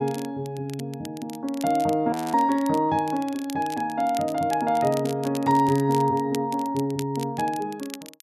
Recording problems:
crackle; vinyl, SNR 18 dB
frozen audio; at 2 s

